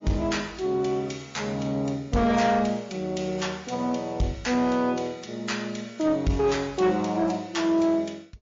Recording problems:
lossy compression; MP3, log-spectral distance 4 dB
distorted audio; soft clipping, signal-to-distortion ratio 12 dB

